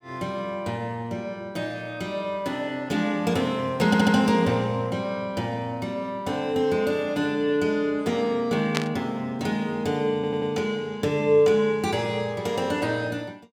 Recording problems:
stutter; at 4 s and at 10 s
burst of static; at 8.5 s; peak +3 dB vs average level

